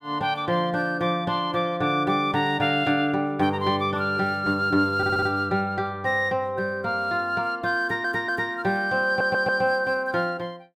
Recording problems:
audio stuttering; at 5 s, at 8 s and at 9 s

